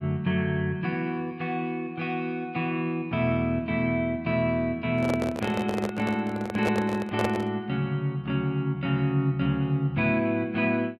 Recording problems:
handling noise; from 5 to 7.5 s; peak +2 dB vs average level

